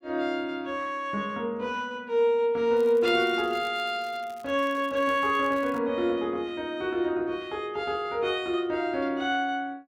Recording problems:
crackling; from 3 to 6 s; loose cable, SNR 26 dB

